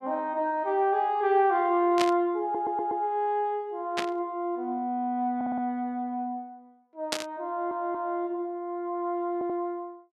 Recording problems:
static burst; at 2 s, at 4 s and at 7 s; peak +4 dB vs average level
stutter; 4 times, first at 2.5 s

